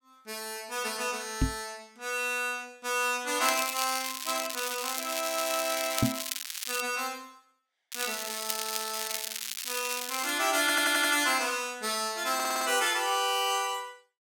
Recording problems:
knock on the microphone; at 1.5 s and at 6 s; peak +7 dB vs average level
crackle; from 3.5 to 7 s and from 8 to 10 s; loose cable, SNR 4 dB
stutter; at 11 s and at 12 s

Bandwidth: 17 kHz